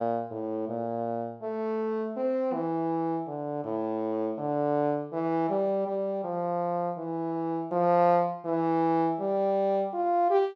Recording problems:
none

